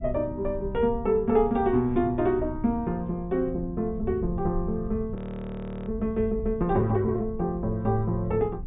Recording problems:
low-pass filter; nothing above 4 kHz
low-frequency rumble; below 110 Hz, SNR 11 dB
audio freezing; at 5 s for 0.5 s

